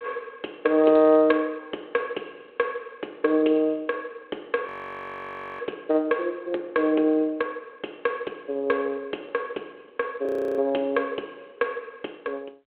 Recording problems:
telephone audio; 280 Hz to 3.3 kHz, G.726
frozen audio; at 4.5 s for 1 s and at 10 s

